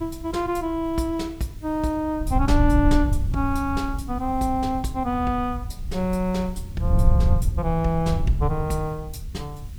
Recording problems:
background hiss; slope +1 dB per octave, SNR 27 dB
wind noise; below 88 Hz, SNR 2 dB

